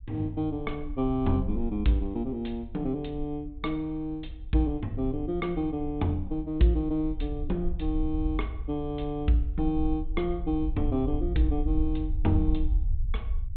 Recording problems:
treble missing; nothing above 4 kHz
low-frequency rumble; below 60 Hz, SNR 6 dB

